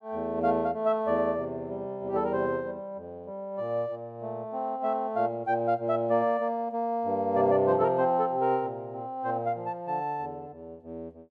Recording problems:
none

